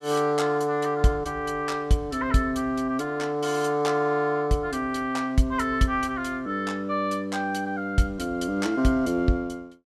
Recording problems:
none

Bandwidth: 15 kHz